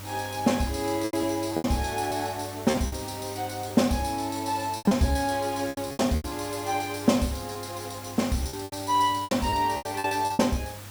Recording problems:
hum; 50 Hz, harmonics up to 600 Hz, SNR 17 dB
background hiss; slope -2 dB per octave, SNR 15 dB
lost packets; 11% of the sound replaced, filled with repeated pitch periods

